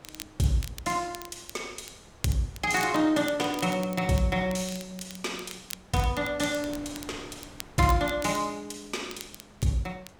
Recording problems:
wind noise; below 1.2 kHz, SNR 23 dB
crackling; vinyl, SNR 16 dB

